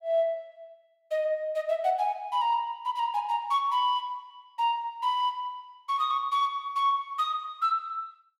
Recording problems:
none

